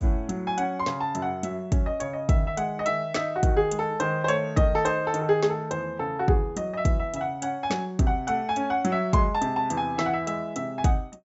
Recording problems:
treble missing; nothing above 8 kHz

